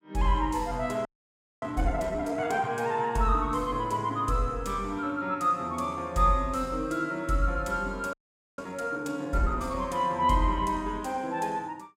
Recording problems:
audio freezing; at 1 s for 0.5 s and at 8 s

